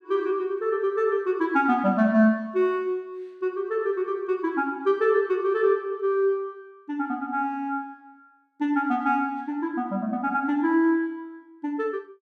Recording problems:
none

